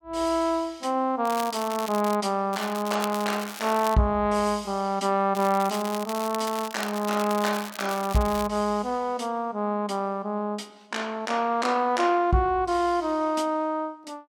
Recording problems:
crackle; at 1.5 s, from 2.5 to 4 s and from 5.5 to 8.5 s; loose cable, SNR 13 dB

